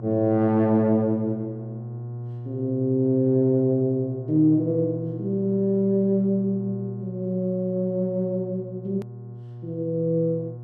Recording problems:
mains hum; 60 Hz, harmonics up to 720 Hz, SNR 13 dB
hard cut with a click; at 9 s

